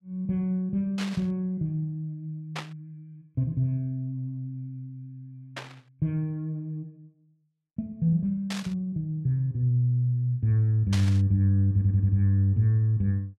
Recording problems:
burst of static; 5 times, first at 1 s; peak -3 dB vs average level
audio stuttering; at 12 s

